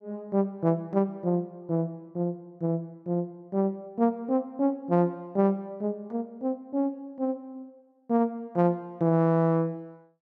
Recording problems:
none

